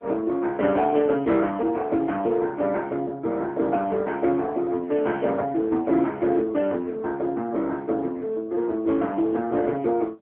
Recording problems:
phone line; 190 Hz to 3.4 kHz, AMR-NB

